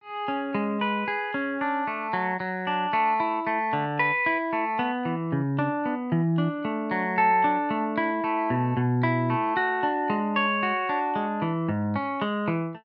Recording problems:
none

